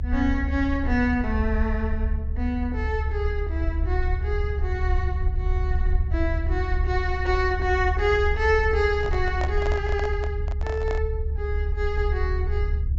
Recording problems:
treble missing; nothing above 8 kHz
rumble; below 72 Hz, SNR 0 dB
handling noise; from 9 to 11 s; peak -2 dB vs average level

